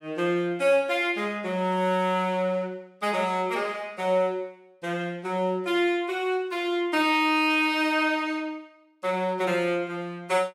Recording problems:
none

